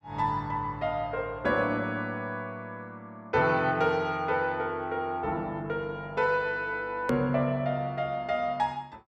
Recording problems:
click at an edit; at 7 s

